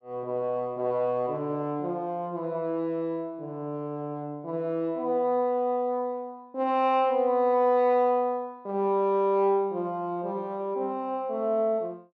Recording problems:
none

